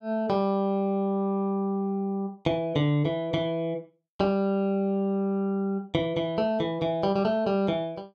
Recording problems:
none

